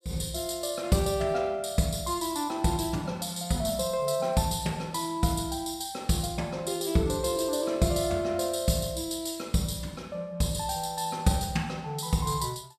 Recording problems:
none

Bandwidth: 14 kHz